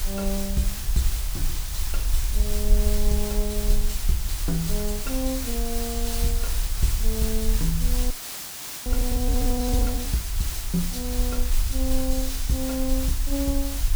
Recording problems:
background hiss; slope +1 dB per octave, SNR 2 dB
rumble; below 50 Hz, SNR -1 dB
audio freezing; at 8 s for 1 s

